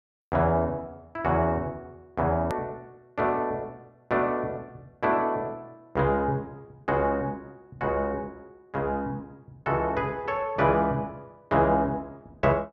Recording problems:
hard cut with a click; at 2.5 s

